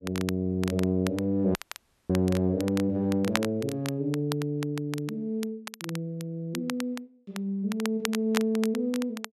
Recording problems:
crackling; vinyl, SNR 11 dB
dropout; at 1.5 s for 0.5 s

